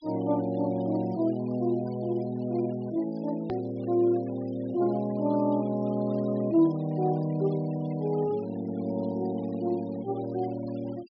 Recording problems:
treble missing; nothing above 5.5 kHz
denoising artefacts; signal-to-artefact ratio 24 dB
edit click; at 3.5 s

